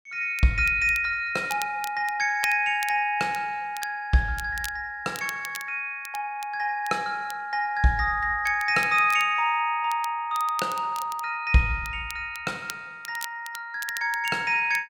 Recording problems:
crackling; vinyl, SNR 17 dB

